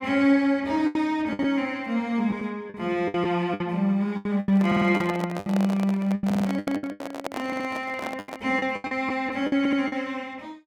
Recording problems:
lost packets; 12% of the sound replaced, filled with the last packet
microphone handling noise; from 4.5 to 8.5 s; peak -2 dB vs average level
stutter; 4 times, first at 4.5 s

